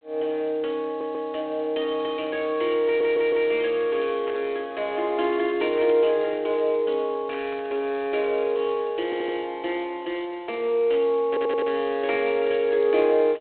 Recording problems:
telephone audio; 280 Hz to 3.3 kHz, G.726
stutter; 4 times, first at 1 s
burst of static; 4 times, first at 4.5 s; peak -12 dB vs average level

